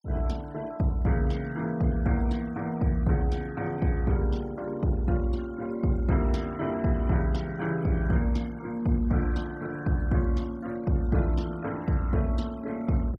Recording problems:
denoising artefacts; signal-to-artefact ratio 23 dB

